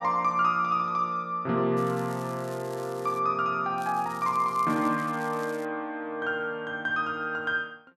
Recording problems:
crackling; from 2 to 3 s and from 4 to 5.5 s; loose cable, SNR 22 dB

